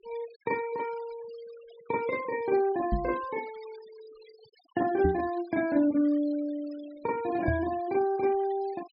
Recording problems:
treble missing; nothing above 5.5 kHz
noise reduction artefacts; signal-to-artefact ratio 22 dB
knock on the microphone; at 3 s, at 5 s and at 7.5 s; peak +4 dB vs average level

